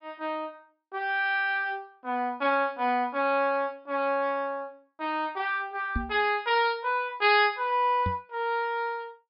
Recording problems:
low-pass filter; nothing above 5.5 kHz
knock on the microphone; at 6 s and at 8 s; peak 0 dB vs average level

